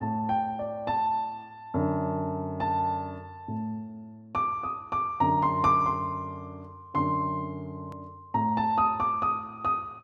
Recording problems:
edit click; at 8 s

